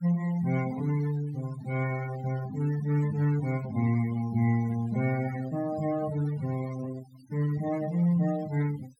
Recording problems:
denoising artefacts; signal-to-artefact ratio 17 dB

